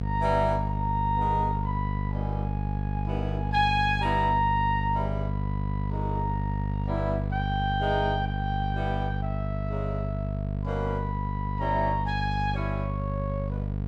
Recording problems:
hum; 50 Hz, harmonics up to 700 Hz, SNR 1 dB

